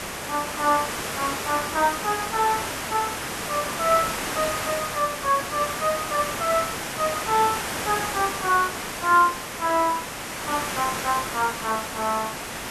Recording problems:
background hiss; slope -3 dB per octave, SNR 4 dB

